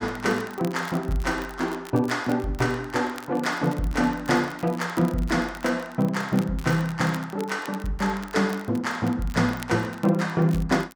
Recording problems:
crackle; vinyl, SNR 20 dB

